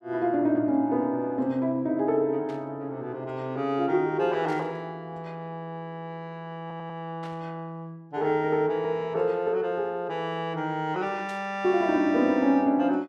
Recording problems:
static burst; 4 times, first at 2.5 s; peak -15 dB vs average level
stutter; at 6.5 s

